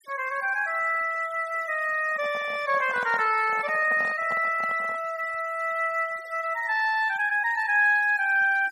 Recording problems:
noise reduction artefacts; signal-to-artefact ratio 23 dB
handling noise; from 2 to 5 s; peak -10 dB vs average level

